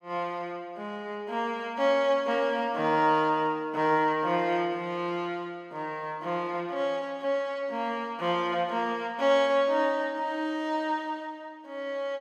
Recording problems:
none

